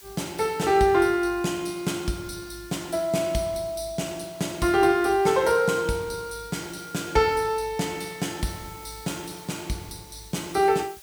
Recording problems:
background hiss; slope +1 dB per octave, SNR 23 dB

